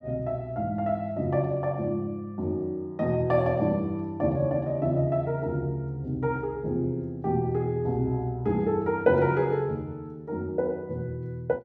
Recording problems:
none

